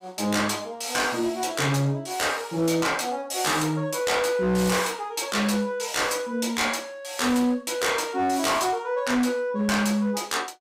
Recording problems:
distortion; hard clipping, signal-to-distortion ratio 11 dB

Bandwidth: 15.5 kHz